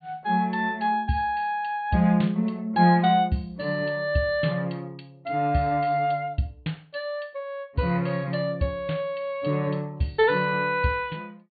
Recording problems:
treble missing; nothing above 4.4 kHz

